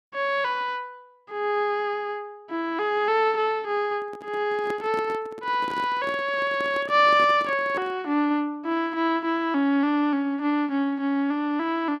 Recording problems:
microphone handling noise; from 4 to 8 s; peak -6 dB vs average level

